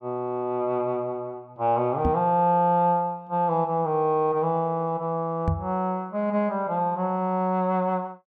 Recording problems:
microphone bump; at 2 s and at 5.5 s; peak +3 dB vs average level

